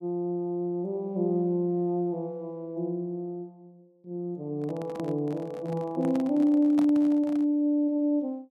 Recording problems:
microphone handling noise; from 4.5 to 7.5 s; peak -4 dB vs average level

